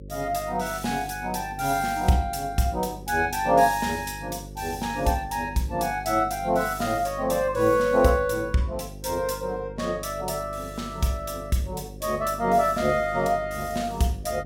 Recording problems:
mains hum; 50 Hz, harmonics up to 550 Hz, SNR 16 dB

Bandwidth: 17 kHz